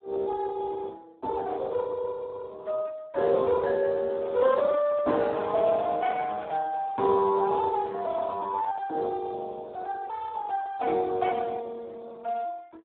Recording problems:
telephone audio; 280 Hz to 2.2 kHz, Speex
microphone handling noise; from 4 to 8 s; peak -10 dB vs average level

